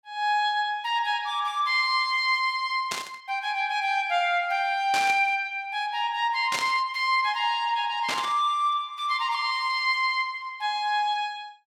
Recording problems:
burst of static; 4 times, first at 3 s; peak 0 dB vs average level

